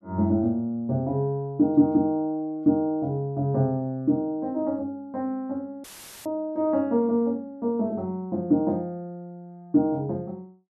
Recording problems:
audio cutting out; at 6 s; filled with static

